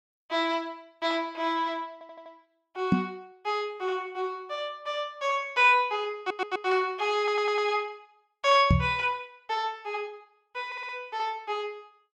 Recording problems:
audio stuttering; 4 times, first at 2 s
knock on the microphone; at 3 s and at 8.5 s; peak +9 dB vs average level

